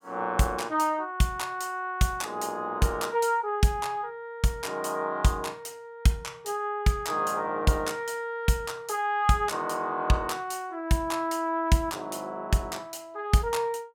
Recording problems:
none

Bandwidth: 17.5 kHz